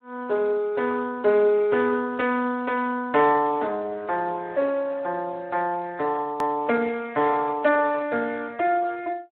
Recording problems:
telephone audio; 300 Hz to 3.6 kHz, Speex
hard cut with a click; at 6.5 s

